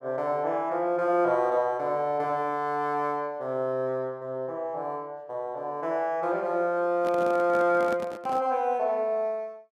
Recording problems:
handling noise; from 7 to 8.5 s; peak -5 dB vs average level

